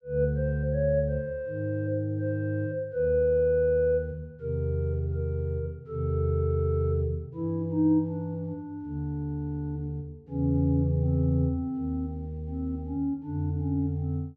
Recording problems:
none

